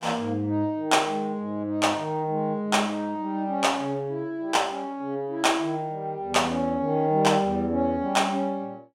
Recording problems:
none

